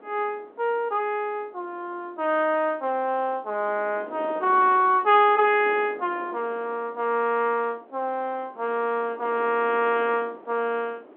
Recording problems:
phone line; 260 Hz to 3.7 kHz, G.711
wind noise; below 720 Hz, SNR 21 dB

